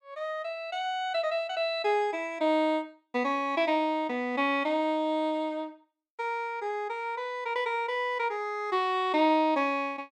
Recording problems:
none

